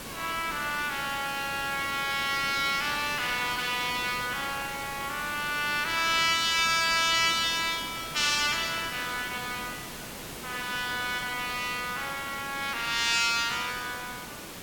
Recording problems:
hiss; slope -3 dB per octave, SNR 11 dB

